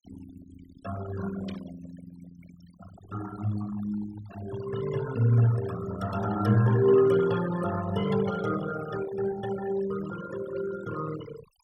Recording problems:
denoising artefacts; signal-to-artefact ratio 13 dB
static burst; at 1.5 s; peak -14 dB vs average level

